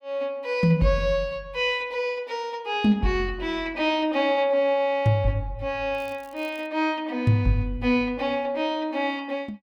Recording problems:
crackle; at 6 s; loose cable, SNR 29 dB

